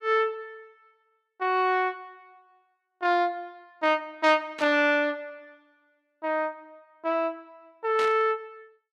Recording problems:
burst of static; at 4.5 s and at 8 s; peak -6 dB vs average level

